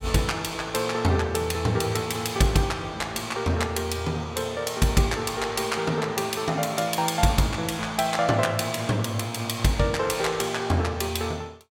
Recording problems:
none

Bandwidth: 16.5 kHz